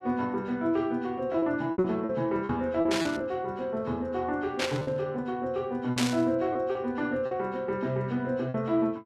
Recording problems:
lost packets; 7% of the sound replaced, filled with repeated pitch periods
static burst; at 3 s, at 4.5 s and at 6 s; peak +4 dB vs average level

